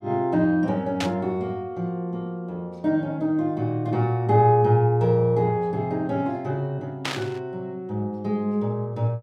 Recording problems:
static burst; at 1 s and at 7 s; peak +1 dB vs average level

